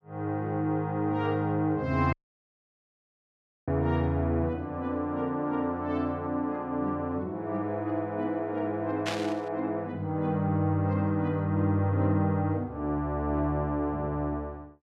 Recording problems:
audio cutting out; at 2 s for 1.5 s
burst of static; at 9 s; peak +1 dB vs average level

